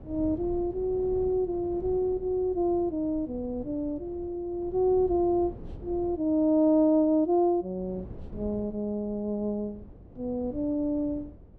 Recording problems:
wind noise; below 230 Hz, SNR 18 dB

